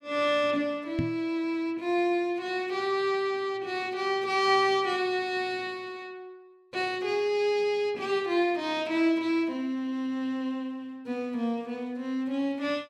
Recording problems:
knock on the microphone; at 1 s; peak +1 dB vs average level

